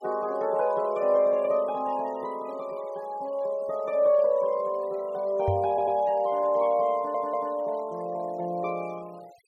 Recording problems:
denoising artefacts; signal-to-artefact ratio 27 dB
knock on the microphone; at 5.5 s; peak +1 dB vs average level
audio stuttering; at 5.5 s and at 7 s

